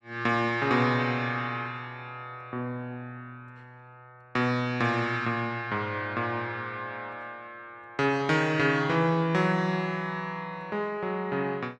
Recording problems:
none

